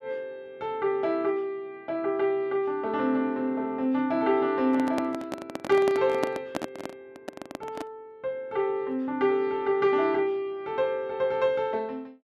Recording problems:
handling noise; from 4.5 to 8 s; peak +1 dB vs average level

